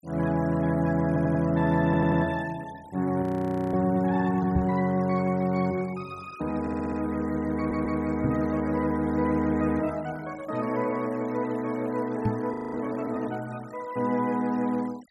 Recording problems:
denoising artefacts; signal-to-artefact ratio 23 dB
audio stuttering; 4 times, first at 1 s
frozen audio; at 3 s for 0.5 s and at 13 s
knock on the microphone; at 4.5 s, at 8.5 s and at 12 s; peak +4 dB vs average level

